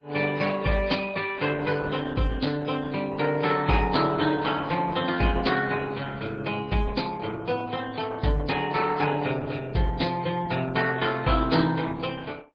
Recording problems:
codec artefacts; MP3, then Opus, log-spectral distance 5 dB

